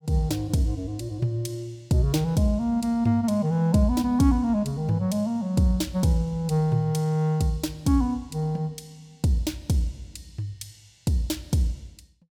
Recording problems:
none

